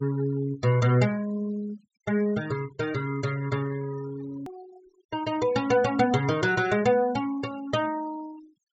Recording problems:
treble cut off; nothing above 8 kHz
denoising artefacts; signal-to-artefact ratio 20 dB
hard cut with a click; at 4.5 s

